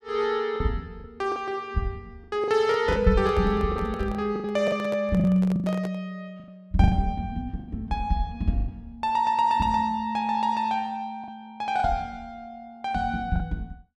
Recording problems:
lost packets; 7% of the sound replaced, filled with the last packet
microphone handling noise; from 2.5 to 6 s; peak -7 dB vs average level

